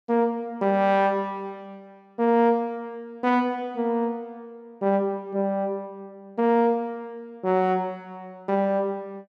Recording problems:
none

